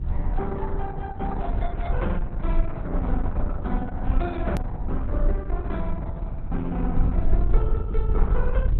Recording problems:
lossy codec; Opus, log-spectral distance 2 dB
hum; 50 Hz, harmonics up to 700 Hz, SNR 22 dB
rumble; below 54 Hz, SNR -5 dB
click at an edit; at 4.5 s

